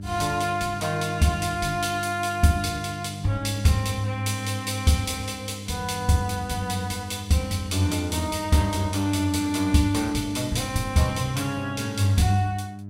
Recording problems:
hum; 50 Hz, harmonics up to 600 Hz, SNR 12 dB

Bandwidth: 16 kHz